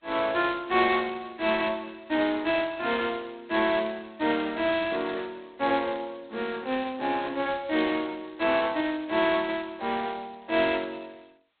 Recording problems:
phone line; 220 Hz to 4 kHz, G.726

